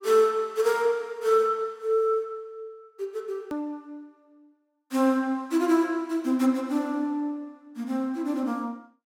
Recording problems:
hard cut with a click; at 3.5 s

